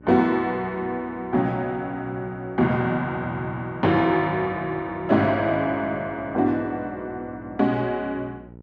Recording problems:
electrical hum; 60 Hz, harmonics up to 960 Hz, SNR 22 dB

